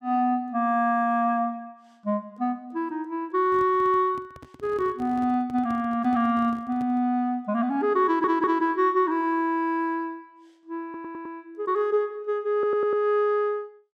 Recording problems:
handling noise; from 3.5 to 7 s; peak -13 dB vs average level
stutter; at 8 s, at 11 s and at 13 s

